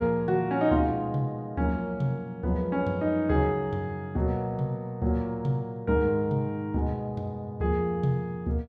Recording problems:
none

